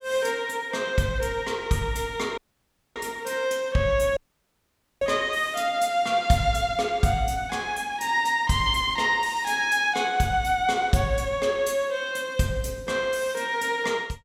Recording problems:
dropout; at 2.5 s for 0.5 s and at 4 s for 1 s

